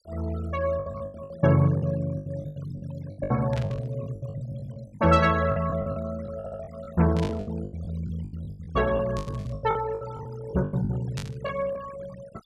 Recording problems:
noise reduction artefacts; signal-to-artefact ratio 19 dB
lost packets; 19% of the sound replaced, filled with the last packet
burst of static; 4 times, first at 3.5 s; peak -7 dB vs average level
stutter; at 6.5 s

